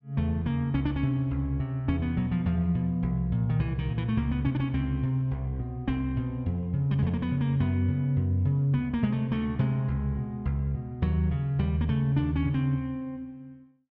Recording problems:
none

